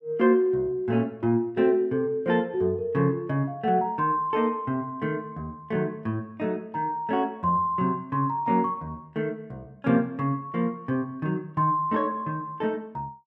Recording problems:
none

